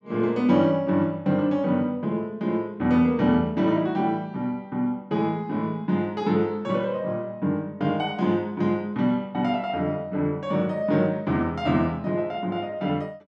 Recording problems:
none

